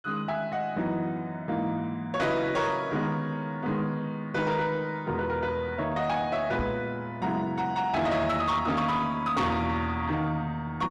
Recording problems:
distorted audio; soft clipping, signal-to-distortion ratio 11 dB
knock on the microphone; at 6.5 s; peak 0 dB vs average level

